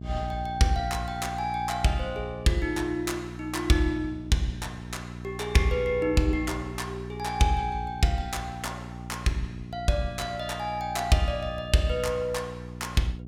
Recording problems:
electrical hum; 60 Hz, harmonics up to 660 Hz, SNR 11 dB

